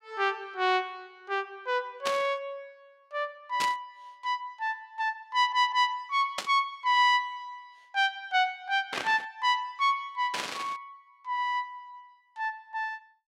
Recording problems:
static burst; 5 times, first at 2 s; peak +1 dB vs average level
stutter; at 5.5 s

